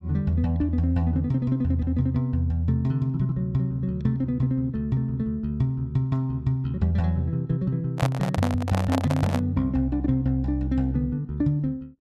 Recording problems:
microphone handling noise; from 8 to 9.5 s; peak +1 dB vs average level

